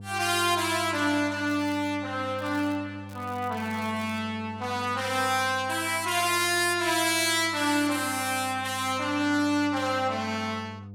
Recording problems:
electrical hum; 50 Hz, harmonics up to 700 Hz, SNR 17 dB
crackle; at 1.5 s, at 2.5 s and from 3 to 4 s; loose cable, SNR 26 dB

